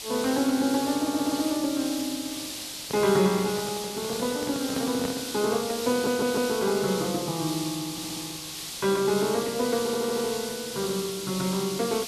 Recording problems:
background hiss; SNR 7 dB
stutter; 4 times, first at 1 s
microphone handling noise; from 3 to 5.5 s; peak -2 dB vs average level

